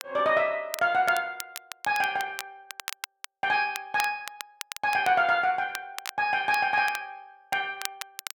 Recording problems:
crackle; vinyl, SNR 13 dB

